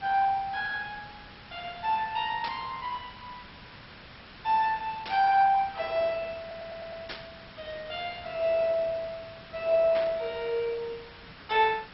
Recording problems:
codec artefacts; MP2, log-spectral distance 7 dB, nothing above 5.2 kHz
hiss; SNR 18 dB
burst of static; 4 times, first at 2.5 s; peak -5 dB vs average level
stutter; at 6.5 s

